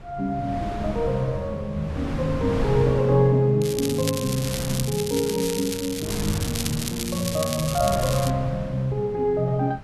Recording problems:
wind on the microphone; below 370 Hz, SNR 10 dB
crackling; from 3.5 to 8.5 s; loose cable, SNR 7 dB

